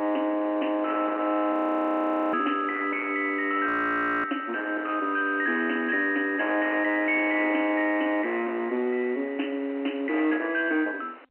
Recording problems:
phone line; 240 Hz to 3.1 kHz, G.711
distorted audio; soft clipping, signal-to-distortion ratio 12 dB
hiss; SNR 23 dB
wind noise; below 1.6 kHz, SNR 20 dB
frozen audio; at 1.5 s for 1 s and at 3.5 s for 0.5 s

